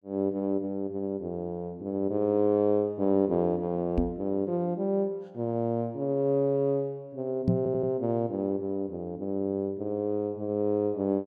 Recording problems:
microphone thump; at 4 s and at 7.5 s; peak +7 dB vs average level
audio stuttering; at 7.5 s

